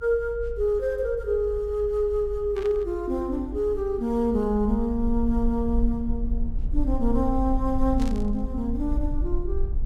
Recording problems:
low-frequency rumble; below 52 Hz, SNR 6 dB
static burst; at 2.5 s and at 8 s; peak -11 dB vs average level

